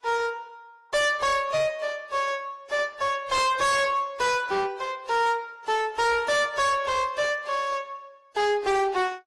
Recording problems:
lossy compression; AAC, then AAC, log-spectral distance 3 dB, nothing above 11 kHz
distortion; hard clipping, uneven, signal-to-distortion ratio 6 dB

